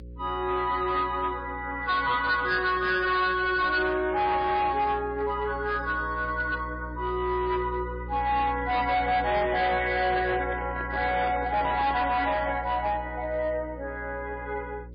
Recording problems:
lossy codec; MP3, log-spectral distance 2 dB, nothing above 4.1 kHz
distorted audio; hard clipping, uneven, signal-to-distortion ratio 12 dB
hum; 60 Hz, harmonics up to 540 Hz, SNR 14 dB
microphone handling noise; from 10 to 12 s; peak -7 dB vs average level

